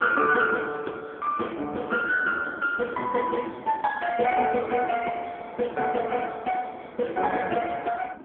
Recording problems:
telephone audio; 260 Hz to 2.8 kHz, AMR-NB
wind noise; below 640 Hz, SNR 18 dB

